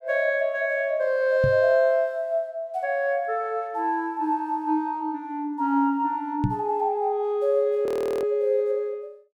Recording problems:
knock on the microphone; at 1.5 s and at 6.5 s; peak +4 dB vs average level
audio freezing; at 8 s

